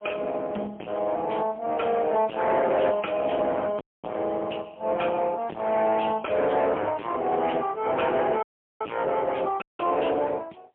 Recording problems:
telephone audio; 300 Hz to 2.6 kHz, AMR-NB, then MP3
distortion; hard clipping, signal-to-distortion ratio 6 dB
audio cutting out; at 4 s, at 8.5 s and at 9.5 s

